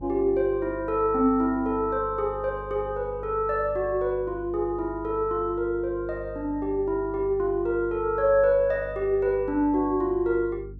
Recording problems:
mains hum; 50 Hz, harmonics up to 450 Hz, SNR 17 dB

